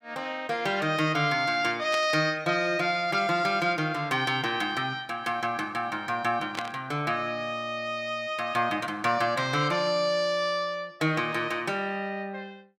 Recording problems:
static burst; at 2 s and at 6.5 s; peak -1 dB vs average level

